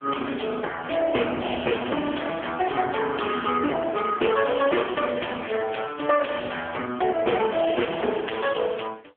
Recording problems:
phone line; 260 Hz to 3.2 kHz, AMR-NB
distortion; soft clipping, signal-to-distortion ratio 7 dB

